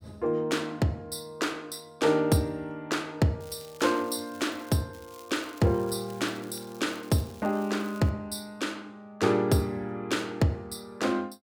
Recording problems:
crackling; from 3.5 to 5 s and from 5 to 8 s; loose cable, SNR 23 dB

